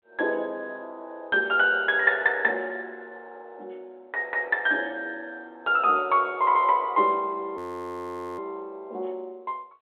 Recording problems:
telephone audio; 320 Hz to 3.5 kHz, G.726
frozen audio; at 7.5 s for 1 s

